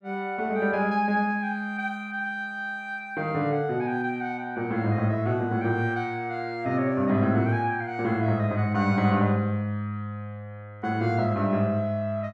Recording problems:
none

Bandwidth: 15 kHz